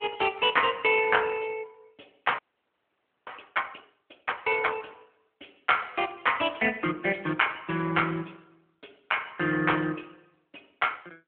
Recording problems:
phone line; 220 Hz to 3.2 kHz, AMR-NB
frozen audio; at 2.5 s for 1 s

